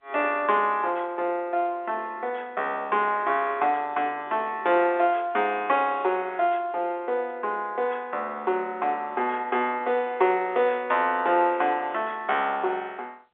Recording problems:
telephone audio; 300 Hz to 3.6 kHz, G.711

